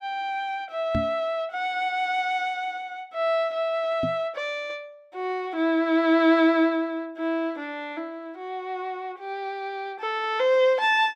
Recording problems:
knock on the microphone; at 1 s and at 4 s; peak +1 dB vs average level

